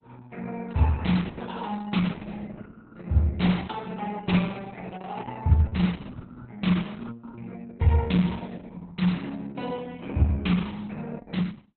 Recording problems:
lossy compression; Opus, log-spectral distance 4 dB, nothing above 4.1 kHz

